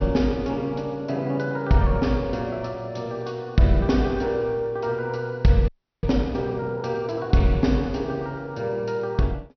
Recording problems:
treble cut off; nothing above 6 kHz
audio freezing; at 5.5 s

